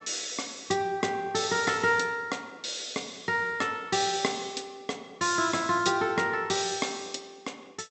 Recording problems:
treble missing; nothing above 8 kHz

